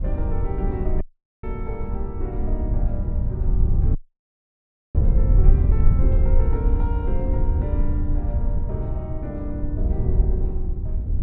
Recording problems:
wind on the microphone; below 74 Hz, SNR -10 dB
audio cutting out; at 1 s and at 4 s for 1 s

